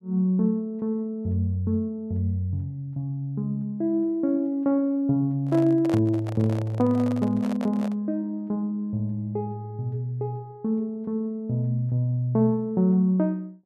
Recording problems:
microphone handling noise; from 5.5 to 8 s; peak -4 dB vs average level

